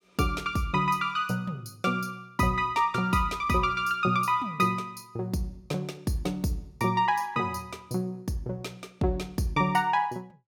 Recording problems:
none

